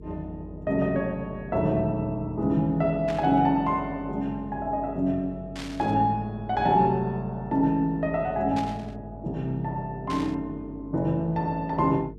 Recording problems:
hum; 50 Hz, harmonics up to 450 Hz, SNR 17 dB
burst of static; 4 times, first at 3 s; peak -7 dB vs average level

